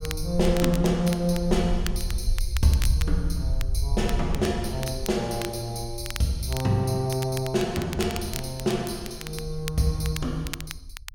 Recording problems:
low-frequency rumble; below 66 Hz, SNR 6 dB
crackling; vinyl, SNR 12 dB

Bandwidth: 16.5 kHz